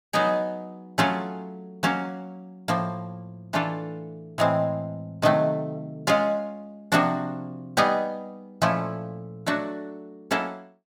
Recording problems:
none

